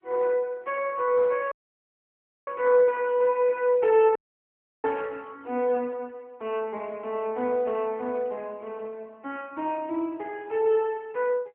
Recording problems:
phone line; 260 Hz to 3.5 kHz, AMR-NB
dropout; at 1.5 s for 1 s and at 4 s for 0.5 s

